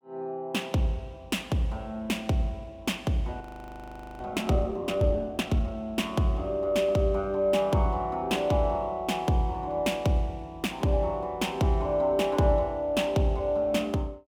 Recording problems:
frozen audio; at 3.5 s for 1 s

